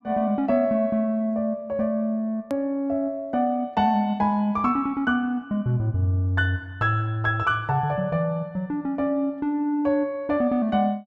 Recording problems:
edit click; at 2.5 s

